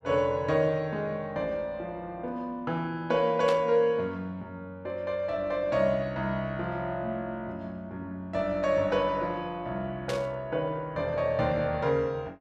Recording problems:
static burst; at 3.5 s and at 10 s; peak -2 dB vs average level

